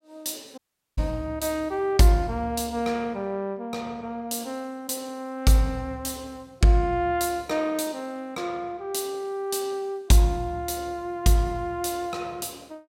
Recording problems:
audio cutting out; at 0.5 s

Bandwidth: 16 kHz